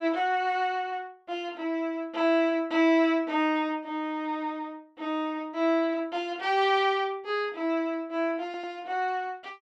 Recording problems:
stutter; at 8.5 s

